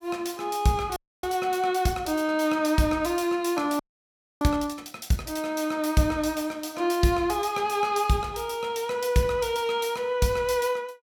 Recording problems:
audio freezing; at 1 s and at 4 s for 0.5 s

